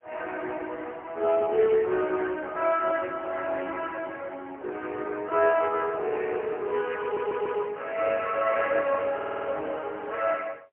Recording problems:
phone line; 320 Hz to 2.6 kHz, AMR-NB, then MP3
stutter; at 7 s and at 9 s

